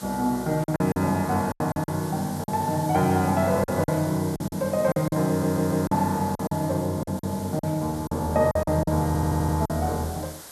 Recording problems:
background hiss; SNR 16 dB
packet loss; 10% of the sound replaced, filled with silence
audio stuttering; at 5.5 s and at 9 s

